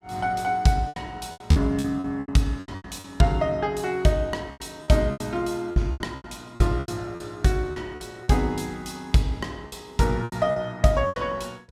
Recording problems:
packet loss; 13% of the sound replaced, filled with repeated pitch periods

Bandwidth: 16.5 kHz